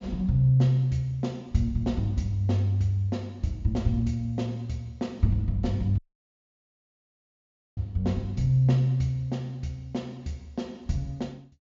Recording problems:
low-pass filter; nothing above 7.3 kHz
dropout; at 6 s for 2 s

